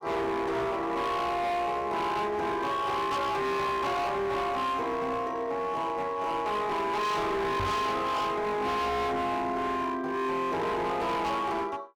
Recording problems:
distorted audio; hard clipping, signal-to-distortion ratio 7 dB
microphone bump; at 7.5 s; peak +1 dB vs average level

